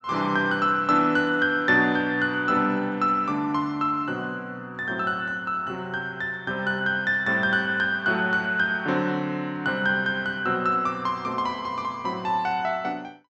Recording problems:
low-pass filter; nothing above 8 kHz

